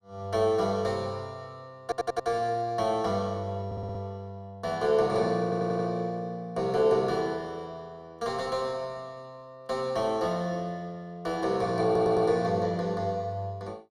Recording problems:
stutter; 4 times, first at 2 s

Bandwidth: 15.5 kHz